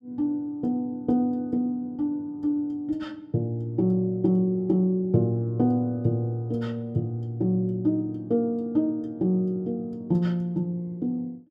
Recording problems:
none

